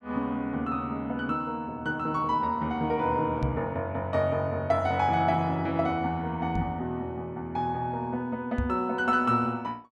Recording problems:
knock on the microphone; at 3.5 s, at 6.5 s and at 8.5 s; peak +3 dB vs average level

